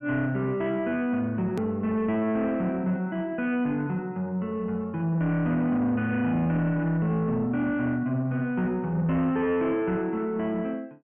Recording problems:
treble missing; nothing above 3.1 kHz
distorted audio; soft clipping, signal-to-distortion ratio 12 dB
click at an edit; at 1.5 s

